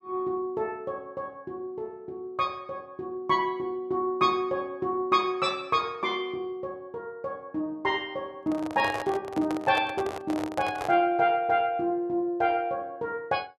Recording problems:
microphone handling noise; from 8.5 to 11 s; peak -2 dB vs average level

